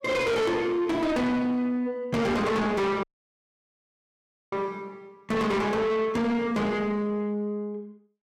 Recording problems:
distortion; soft clipping, signal-to-distortion ratio 7 dB
audio cutting out; at 3 s for 1.5 s

